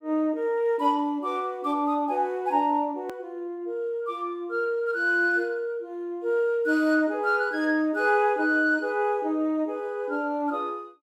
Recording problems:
edit click; at 3 s

